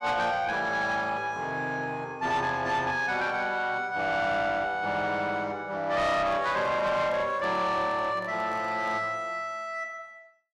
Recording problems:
distortion; soft clipping, signal-to-distortion ratio 11 dB
microphone handling noise; from 6 to 9 s; peak -11 dB vs average level

